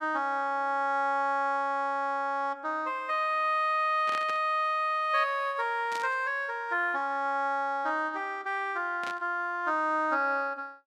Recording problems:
static burst; at 4 s, at 6 s and at 9 s; peak -6 dB vs average level

